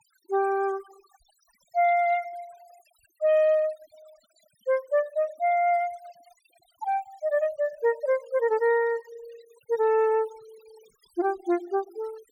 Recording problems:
denoising artefacts; signal-to-artefact ratio 25 dB

